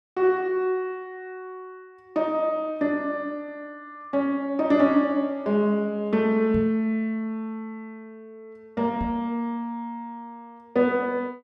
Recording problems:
microphone bump; at 6.5 s and at 9 s; peak -3 dB vs average level

